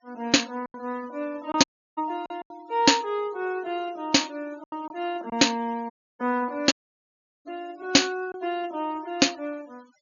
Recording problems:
treble cut off; nothing above 6.9 kHz
denoising artefacts; signal-to-artefact ratio 26 dB
lost packets; 5% of the sound replaced, filled with silence
audio cutting out; at 1.5 s, at 6 s and at 6.5 s for 0.5 s

